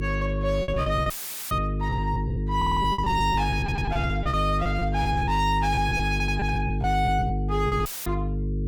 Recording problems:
distortion; hard clipping, uneven, signal-to-distortion ratio 6 dB
electrical hum; 50 Hz, harmonics up to 450 Hz, SNR 1 dB
packet loss; 15% of the sound replaced, filled with repeated pitch periods
dropout; at 1 s and at 8 s; filled with static
stutter; at 2.5 s, at 3.5 s and at 6 s

